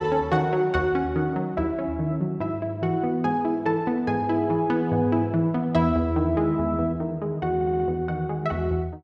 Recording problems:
audio stuttering; at 7.5 s

